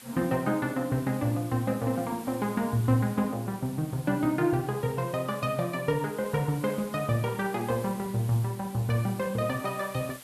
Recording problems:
hiss; slope 0 dB per octave, SNR 18 dB

